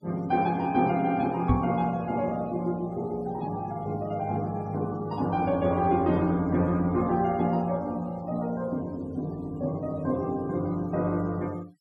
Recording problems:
noise reduction artefacts; signal-to-artefact ratio 26 dB
microphone bump; at 1.5 s; peak +8 dB vs average level

